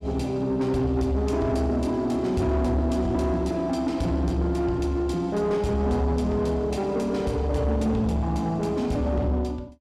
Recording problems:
distorted audio; soft clipping, signal-to-distortion ratio 12 dB

